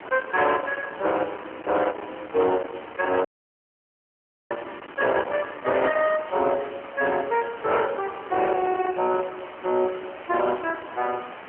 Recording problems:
telephone audio; 260 Hz to 3.2 kHz, AMR-NB
distortion; hard clipping, uneven, signal-to-distortion ratio 12 dB
background hiss; SNR 16 dB
wind on the microphone; below 1.6 kHz, SNR 16 dB
dropout; at 3.5 s for 1.5 s

